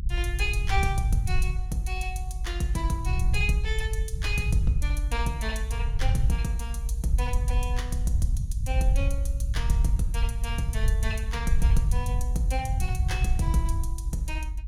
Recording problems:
low-frequency rumble; below 72 Hz, SNR -4 dB

